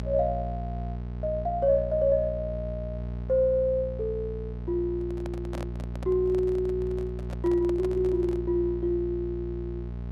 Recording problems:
hum; 60 Hz, harmonics up to 660 Hz, SNR 7 dB
handling noise; from 5 to 8.5 s; peak -6 dB vs average level

